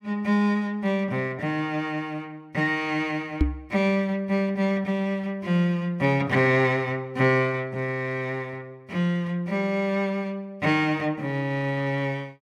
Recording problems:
knock on the microphone; at 3.5 s; peak +7 dB vs average level

